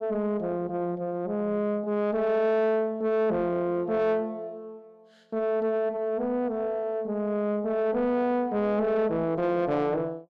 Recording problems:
distortion; soft clipping, signal-to-distortion ratio 9 dB

